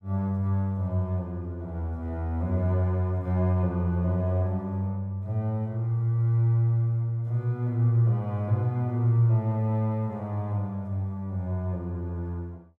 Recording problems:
none

